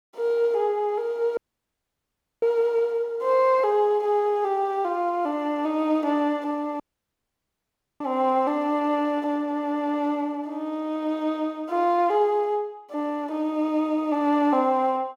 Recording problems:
audio cutting out; at 1.5 s for 1 s and at 7 s for 1 s

